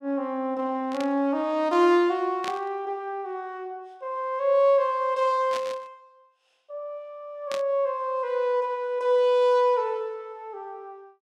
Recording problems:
static burst; 4 times, first at 1 s; peak -6 dB vs average level

